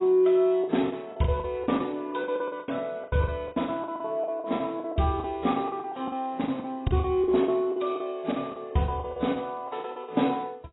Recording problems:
codec artefacts; AAC, log-spectral distance 3 dB, nothing above 3.8 kHz
packet loss; 19% of the sound replaced, filled with the last packet

